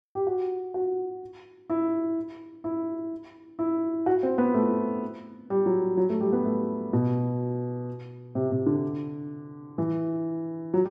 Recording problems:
none

